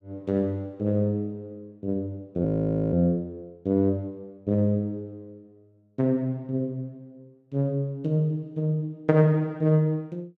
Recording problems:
frozen audio; at 2.5 s

